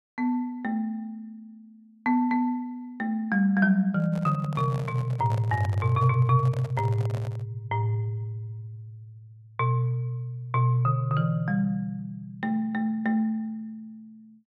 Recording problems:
microphone handling noise; from 4 to 7.5 s; peak -8 dB vs average level

